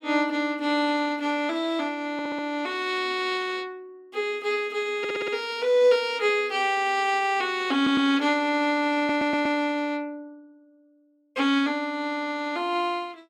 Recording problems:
stutter; 4 times, first at 2 s

